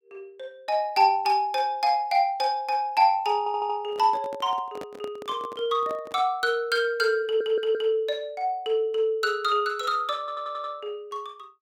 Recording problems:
stutter; at 3.5 s, at 7 s and at 10 s
microphone handling noise; from 4 to 6 s; peak -9 dB vs average level

